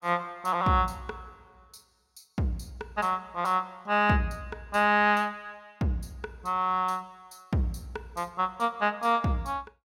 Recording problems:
none

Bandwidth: 16.5 kHz